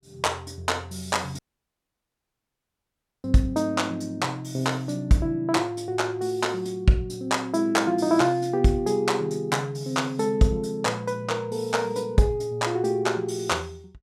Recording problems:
dropout; at 1.5 s for 2 s

